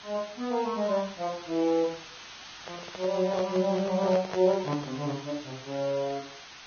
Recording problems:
codec artefacts; Vorbis, log-spectral distance 11 dB, nothing above 6.3 kHz
background hiss; SNR 15 dB
microphone handling noise; from 2.5 to 5 s; peak -3 dB vs average level

